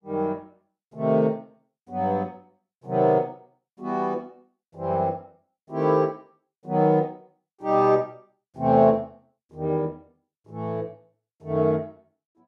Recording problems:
none

